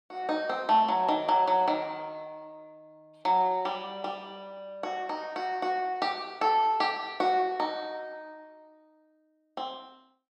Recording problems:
none

